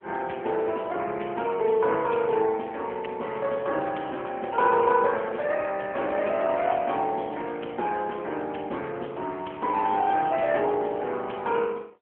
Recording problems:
phone line; 240 Hz to 3.3 kHz, AMR-NB

